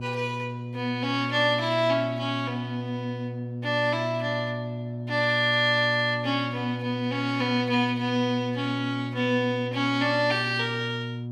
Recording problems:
hum; 60 Hz, harmonics up to 600 Hz, SNR 8 dB

